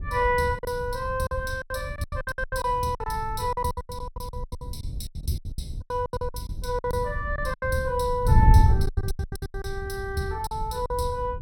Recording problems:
wind noise; below 100 Hz, SNR 1 dB
packet loss; 21% of the sound replaced, filled with silence

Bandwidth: 17.5 kHz